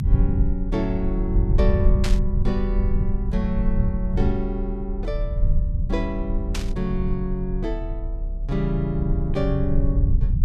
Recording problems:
low-frequency rumble; below 76 Hz, SNR -2 dB
static burst; at 2 s and at 6.5 s; peak +2 dB vs average level

